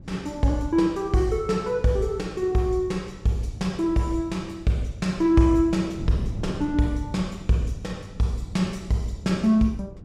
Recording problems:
wind noise; below 190 Hz, SNR 16 dB

